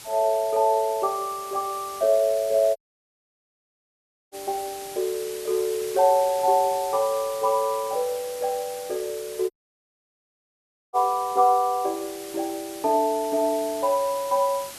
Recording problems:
hiss; slope 0 dB per octave, SNR 15 dB
dropout; at 3 s for 1.5 s and at 9.5 s for 1.5 s

